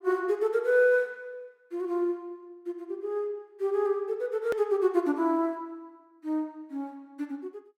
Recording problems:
hard cut with a click; at 4.5 s

